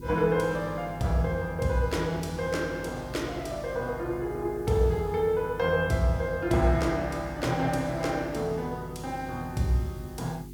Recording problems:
hum; 50 Hz, harmonics up to 400 Hz, SNR 15 dB
background hiss; SNR 29 dB

